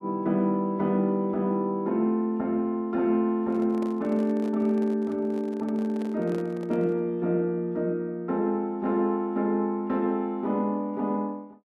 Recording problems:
handling noise; from 3.5 to 7 s; peak -9 dB vs average level

